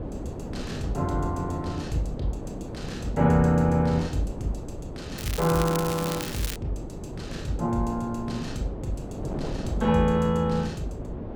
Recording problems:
wind noise; below 420 Hz, SNR 9 dB
crackling; from 5 to 6.5 s; loose cable, SNR 8 dB

